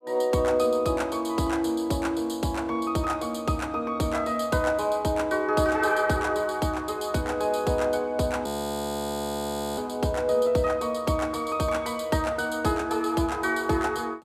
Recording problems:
frozen audio; at 8.5 s for 1.5 s

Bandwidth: 15 kHz